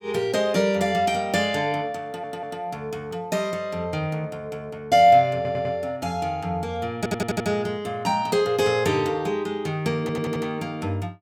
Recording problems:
stutter; 4 times, first at 2 s

